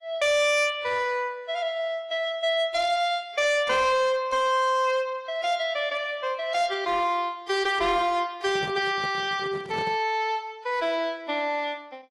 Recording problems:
codec artefacts; AAC, log-spectral distance 2 dB, nothing above 11.3 kHz
distorted audio; hard clipping, signal-to-distortion ratio 11 dB
handling noise; from 8.5 to 10 s; peak -7 dB vs average level

